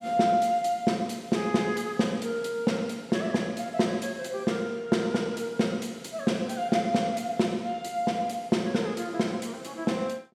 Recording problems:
none

